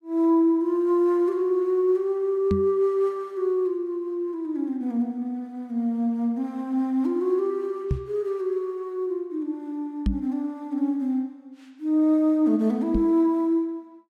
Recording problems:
microphone thump; 4 times, first at 2.5 s; peak +4 dB vs average level

